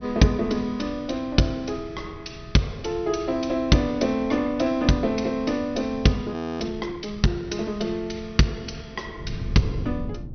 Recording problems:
treble missing; nothing above 6.1 kHz
wind on the microphone; below 150 Hz, SNR 15 dB
audio freezing; at 6.5 s

